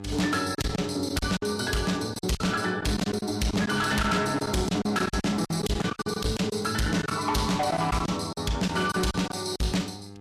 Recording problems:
lossy compression; Vorbis, log-spectral distance 4 dB, nothing above 13.8 kHz
distortion; soft clipping, signal-to-distortion ratio 8 dB
mains hum; 50 Hz, harmonics up to 1.3 kHz, SNR 15 dB
packet loss; 12% of the sound replaced, filled with silence

